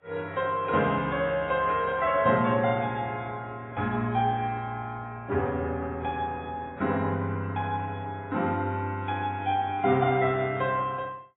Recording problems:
lossy codec; AAC, log-spectral distance 2 dB, nothing above 3.2 kHz

